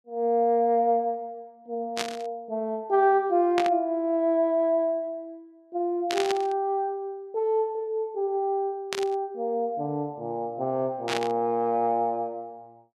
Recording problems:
static burst; 5 times, first at 2 s; peak +1 dB vs average level

